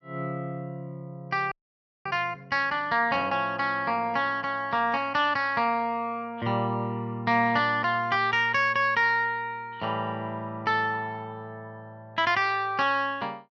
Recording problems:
audio freezing; at 1.5 s for 0.5 s

